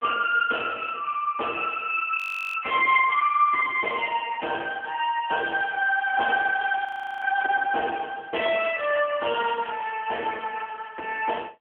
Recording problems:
phone line; 280 Hz to 3.1 kHz, AMR-NB
frozen audio; at 2 s and at 7 s

